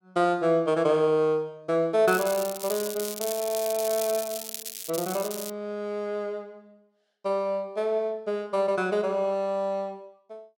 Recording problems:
crackling; from 2 to 5.5 s; loose cable, SNR 8 dB

